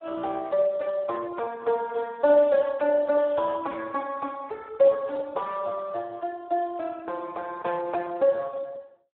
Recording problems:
telephone audio; 320 Hz to 2.2 kHz, Speex

